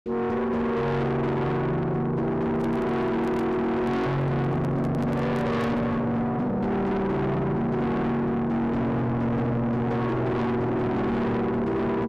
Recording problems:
distorted audio; soft clipping, signal-to-distortion ratio 6 dB
handling noise; from 2.5 to 6 s; peak -8 dB vs average level

